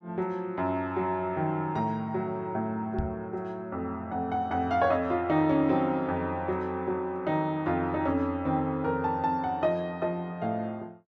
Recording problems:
knock on the microphone; at 3 s; peak +1 dB vs average level

